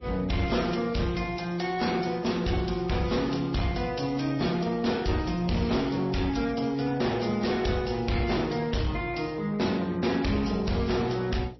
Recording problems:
lossy codec; AAC, then MP3, log-spectral distance 6 dB, nothing above 5.7 kHz
distortion; hard clipping, signal-to-distortion ratio 11 dB
hum; 60 Hz, harmonics up to 540 Hz, SNR 26 dB

